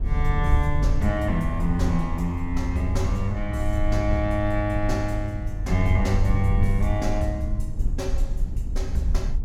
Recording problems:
low-frequency rumble; below 68 Hz, SNR 2 dB

